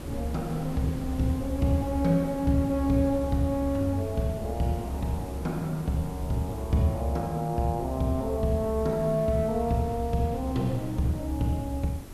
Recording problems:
hiss; SNR 24 dB
wind on the microphone; below 370 Hz, SNR 14 dB

